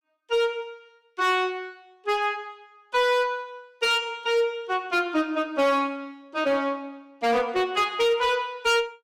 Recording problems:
distorted audio; hard clipping, signal-to-distortion ratio 12 dB

